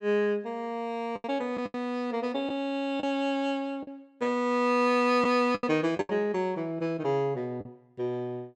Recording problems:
lost packets; 6% of the sound replaced, filled with the last packet

